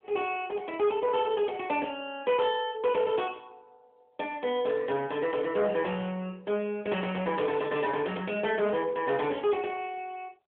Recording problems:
phone line; 260 Hz to 3.3 kHz, AMR-NB
distortion; hard clipping, signal-to-distortion ratio 12 dB

